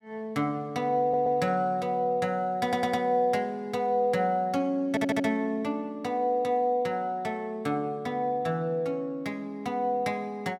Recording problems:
audio stuttering; at 1 s, at 2.5 s and at 5 s

